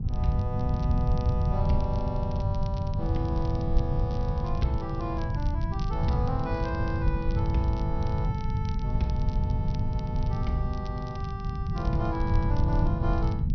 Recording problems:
treble cut off; nothing above 6 kHz
hum; 50 Hz, harmonics up to 450 Hz, SNR 4 dB
low-frequency rumble; below 120 Hz, SNR -4 dB
crackle; vinyl, SNR 20 dB

